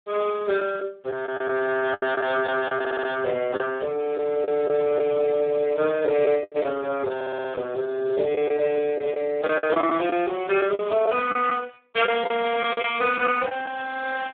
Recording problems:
phone line; 280 Hz to 2.7 kHz, Speex
lost packets; 7% of the sound replaced, filled with the last packet
audio stuttering; at 3 s and at 7 s

